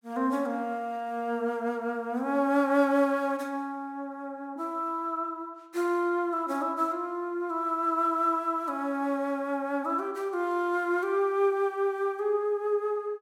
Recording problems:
none

